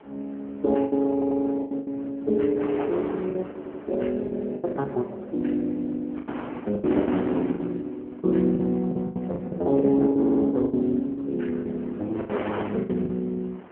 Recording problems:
phone line; 150 Hz to 2 kHz, AMR-NB
wind on the microphone; below 1.1 kHz, SNR 13 dB
lost packets; 11% of the sound replaced, filled with the last packet
stutter; at 1 s, at 3.5 s and at 10 s

